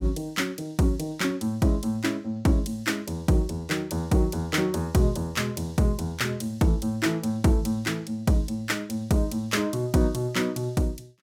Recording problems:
none

